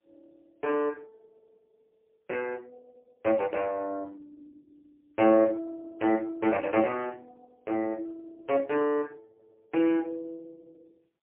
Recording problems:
phone line; 260 Hz to 3.1 kHz, AMR-NB, then MP3

